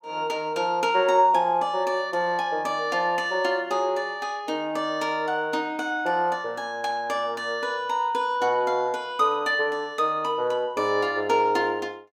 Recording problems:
none

